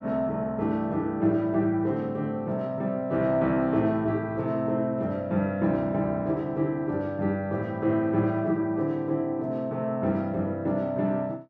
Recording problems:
none

